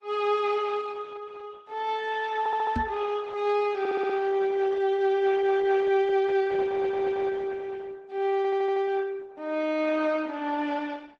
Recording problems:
lossy codec; Vorbis, then Opus, log-spectral distance 3 dB
stutter; 4 times, first at 2.5 s
microphone bump; at 3 s; peak +1 dB vs average level

